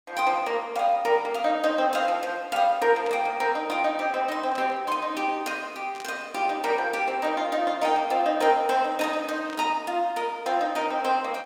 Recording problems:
static burst; 4 times, first at 3 s; peak -12 dB vs average level

